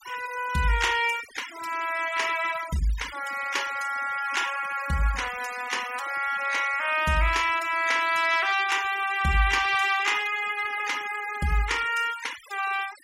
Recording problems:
denoising artefacts; signal-to-artefact ratio 14 dB

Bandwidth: 16 kHz